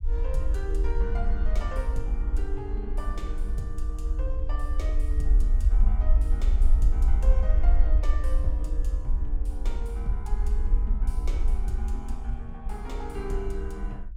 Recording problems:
low-frequency rumble; below 52 Hz, SNR -11 dB

